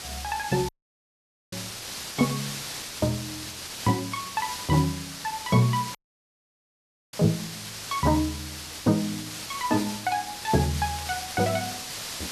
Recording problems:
hiss; slope +1 dB per octave, SNR 8 dB
dropout; at 0.5 s for 1 s and at 6 s for 1 s
burst of static; at 6 s, at 9 s and at 11 s; peak -14 dB vs average level

